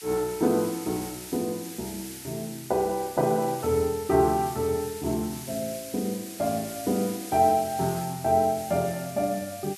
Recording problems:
hiss; SNR 13 dB

